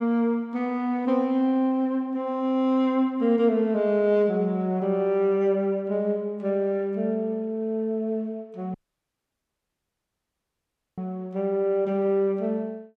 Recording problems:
dropout; at 8.5 s for 2 s

